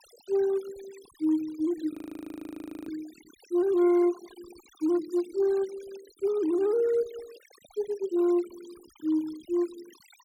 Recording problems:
denoising artefacts; signal-to-artefact ratio 23 dB
audio freezing; at 2 s for 1 s

